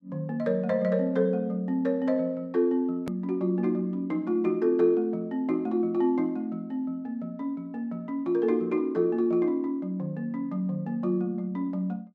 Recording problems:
hard cut with a click; at 3 s

